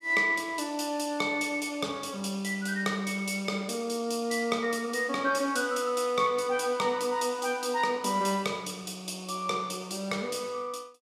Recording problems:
none

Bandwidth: 14.5 kHz